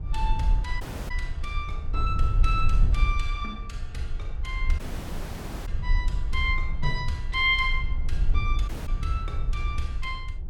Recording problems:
low-frequency rumble; below 54 Hz, SNR -1 dB
audio cutting out; at 1 s, at 5 s for 1 s and at 8.5 s

